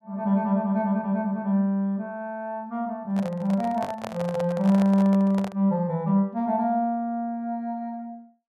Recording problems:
packet loss; 0.5% of the sound replaced, filled with the last packet
microphone handling noise; from 3 to 5.5 s; peak -6 dB vs average level

